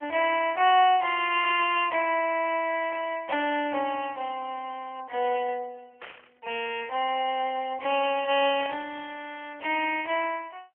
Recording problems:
telephone audio; 320 Hz to 3.2 kHz, AMR-NB
burst of static; 4 times, first at 1.5 s; peak -7 dB vs average level

